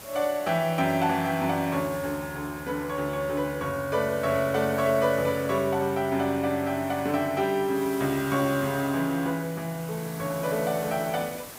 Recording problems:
background hiss; slope -3 dB per octave, SNR 15 dB

